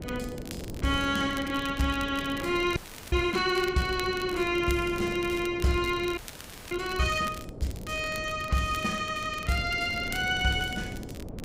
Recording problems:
wind noise; below 390 Hz, SNR 12 dB
crackling; vinyl, SNR 17 dB
frozen audio; at 3 s and at 6 s for 0.5 s

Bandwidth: 15.5 kHz